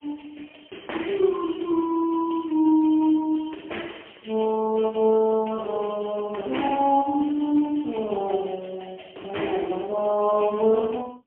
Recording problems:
phone line; 240 Hz to 3.1 kHz, AMR-NB, then MP3

